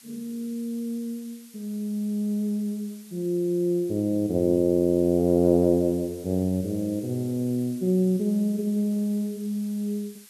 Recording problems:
hiss; slope +3 dB per octave, SNR 23 dB

